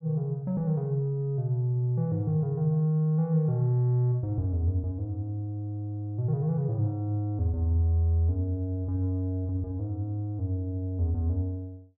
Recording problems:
treble cut off; nothing above 4 kHz

